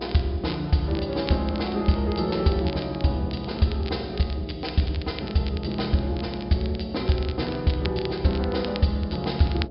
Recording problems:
treble missing; nothing above 5.2 kHz
electrical hum; 60 Hz, harmonics up to 720 Hz, SNR 15 dB
crackling; vinyl, SNR 16 dB

